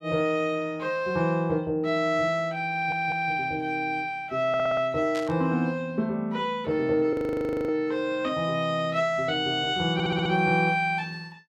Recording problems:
stutter; at 2.5 s, at 4.5 s and at 10 s
burst of static; at 5 s; peak -9 dB vs average level
audio freezing; at 7 s for 0.5 s

